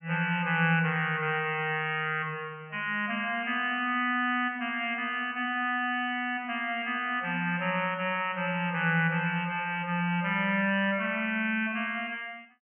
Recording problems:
treble missing; nothing above 3.1 kHz

